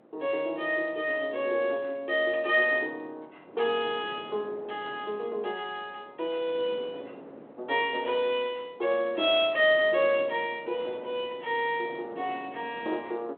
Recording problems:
phone line; 320 Hz to 3.4 kHz, G.726
wind on the microphone; below 650 Hz, SNR 20 dB

